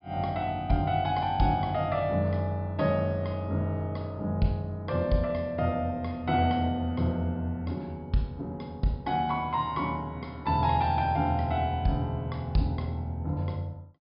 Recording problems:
treble missing; nothing above 5.5 kHz

